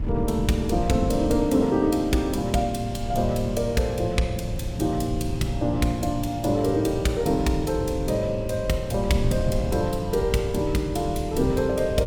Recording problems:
wind noise; below 140 Hz, SNR 8 dB

